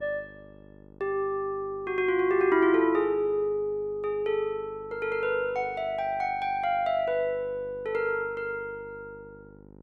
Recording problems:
hum; 50 Hz, harmonics up to 1.1 kHz, SNR 23 dB

